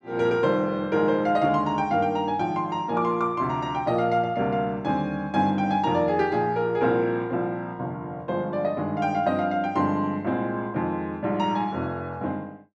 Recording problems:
none

